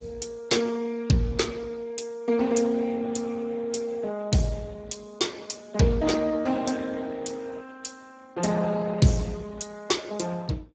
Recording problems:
codec artefacts; Speex, log-spectral distance 5 dB, nothing above 7.6 kHz

